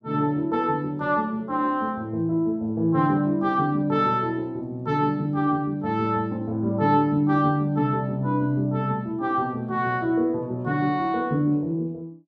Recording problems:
none

